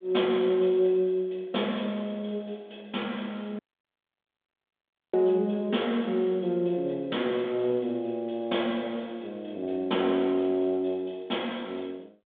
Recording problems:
telephone audio; 190 Hz to 3.6 kHz, G.726
audio cutting out; at 3.5 s for 1.5 s

